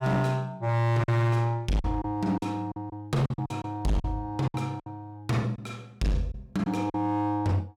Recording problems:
distortion; hard clipping, signal-to-distortion ratio 8 dB
packet loss; 8% of the sound replaced, filled with silence

